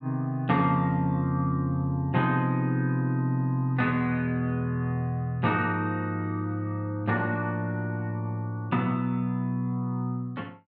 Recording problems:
none

